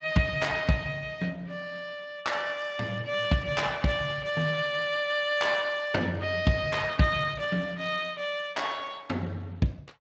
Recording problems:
lossy codec; Speex, log-spectral distance 4 dB, nothing above 7.3 kHz

